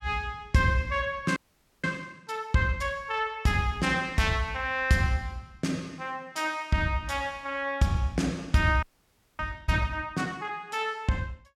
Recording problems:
frozen audio; at 1.5 s and at 9 s for 0.5 s

